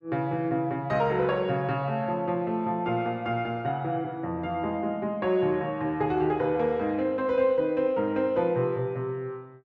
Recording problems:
none

